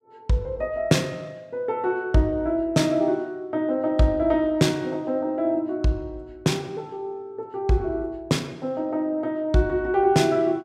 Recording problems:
none

